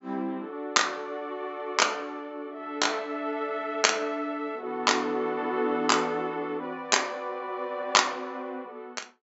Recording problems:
low-pass filter; nothing above 8 kHz

